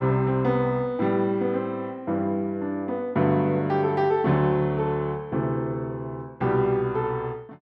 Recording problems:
none

